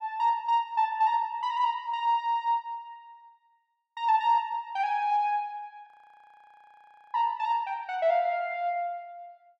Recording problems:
frozen audio; at 6 s for 1.5 s

